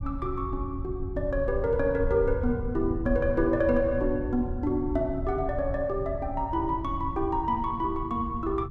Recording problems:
rumble; below 100 Hz, SNR 8 dB

